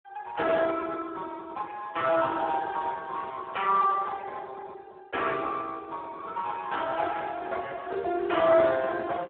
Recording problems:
phone line; 280 Hz to 2.3 kHz, Speex

